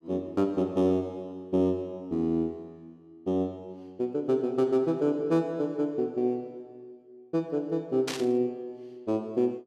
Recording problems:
static burst; at 8 s; peak -1 dB vs average level

